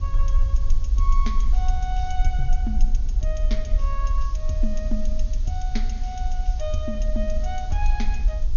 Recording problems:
treble missing; nothing above 6.7 kHz
hiss; slope 0 dB per octave, SNR 18 dB
low-frequency rumble; below 44 Hz, SNR -7 dB
wind on the microphone; below 330 Hz, SNR 18 dB

